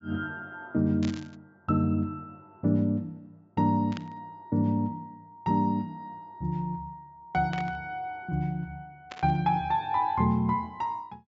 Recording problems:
treble cut off; nothing above 8 kHz
burst of static; 4 times, first at 1 s; peak -7 dB vs average level

